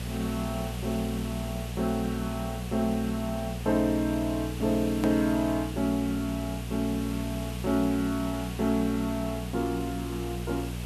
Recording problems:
hum; 60 Hz, harmonics up to 660 Hz, SNR 7 dB
background hiss; SNR 13 dB
hard cut with a click; at 5 s

